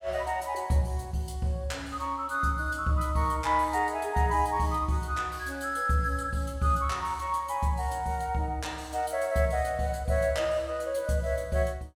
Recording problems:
none

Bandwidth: 17 kHz